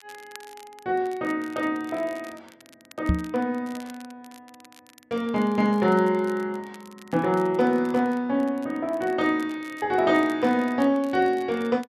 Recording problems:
crackling; vinyl, SNR 26 dB
knock on the microphone; at 3 s; peak +5 dB vs average level

